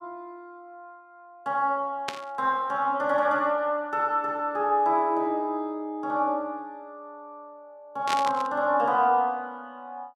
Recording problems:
static burst; at 2 s and at 8 s; peak -1 dB vs average level

